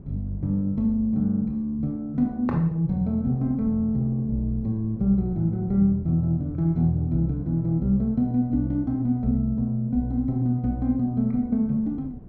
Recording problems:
wind noise; below 200 Hz, SNR 21 dB

